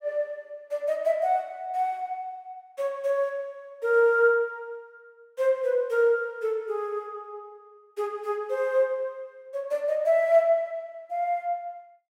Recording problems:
none

